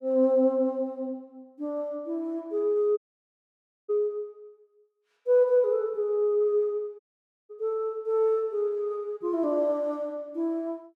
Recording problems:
audio cutting out; at 3 s for 1 s and at 7 s

